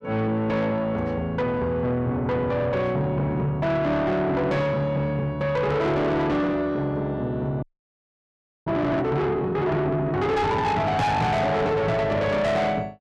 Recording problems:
distorted audio; soft clipping, signal-to-distortion ratio 8 dB
frozen audio; at 7.5 s for 1 s

